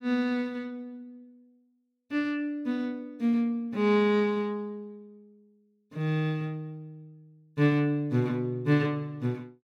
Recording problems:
none

